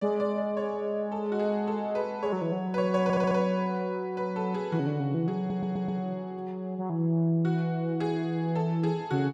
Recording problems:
audio stuttering; at 3 s and at 5.5 s

